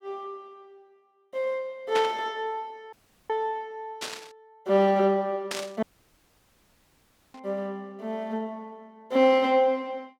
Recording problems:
burst of static; 4 times, first at 2 s; peak -1 dB vs average level
audio cutting out; at 3 s and at 6 s for 1.5 s

